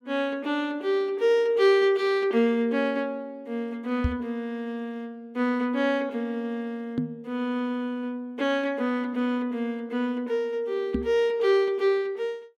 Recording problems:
knock on the microphone; at 4 s, at 7 s and at 11 s; peak +4 dB vs average level

